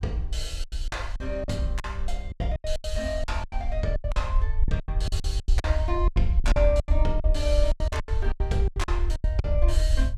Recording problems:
rumble; below 62 Hz, SNR -3 dB
lost packets; 18% of the sound replaced, filled with silence

